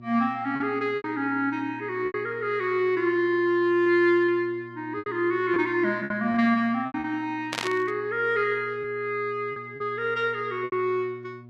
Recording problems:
hum; 60 Hz, harmonics up to 720 Hz, SNR 21 dB
packet loss; 6% of the sound replaced, filled with repeated pitch periods
burst of static; at 7.5 s; peak +1 dB vs average level

